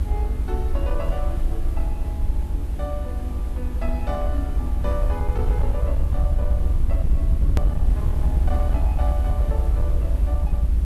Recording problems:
distortion; hard clipping, uneven, signal-to-distortion ratio 10 dB
hum; 50 Hz, harmonics up to 350 Hz, SNR 6 dB
background hiss; slope -6 dB per octave, SNR 8 dB
rumble; below 70 Hz, SNR -10 dB
click at an edit; at 7.5 s

